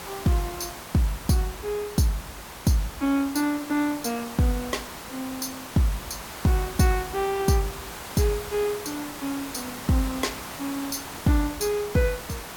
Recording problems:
hiss; SNR 10 dB

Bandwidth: 18 kHz